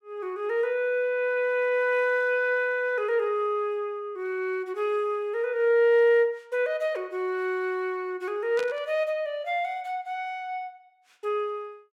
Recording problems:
burst of static; at 8.5 s; peak -7 dB vs average level

